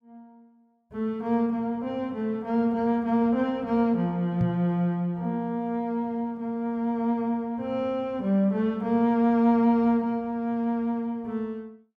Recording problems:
microphone thump; at 4.5 s; peak +3 dB vs average level

